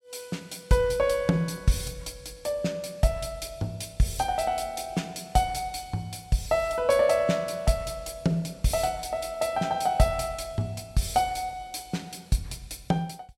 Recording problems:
none

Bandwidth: 16 kHz